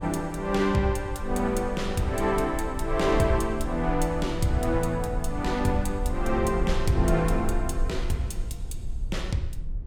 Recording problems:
rumble; below 58 Hz, SNR 7 dB

